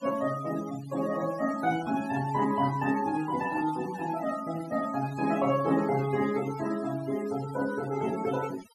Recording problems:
noise reduction artefacts; signal-to-artefact ratio 16 dB

